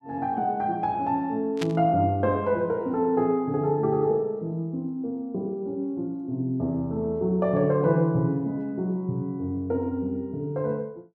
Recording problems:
burst of static; at 1.5 s; peak -3 dB vs average level

